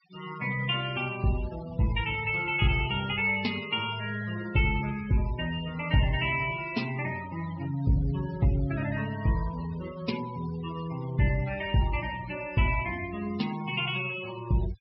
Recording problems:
low-pass filter; nothing above 5.5 kHz
noise reduction artefacts; signal-to-artefact ratio 15 dB

